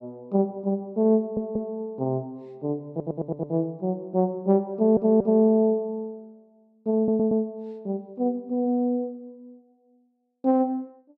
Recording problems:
stutter; 4 times, first at 1 s

